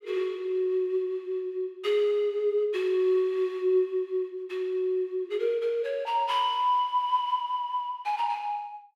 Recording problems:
none

